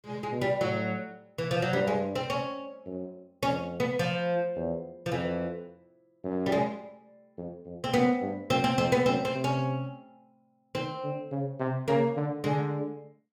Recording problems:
none

